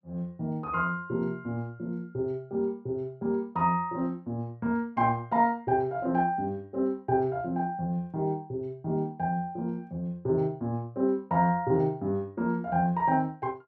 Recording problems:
none

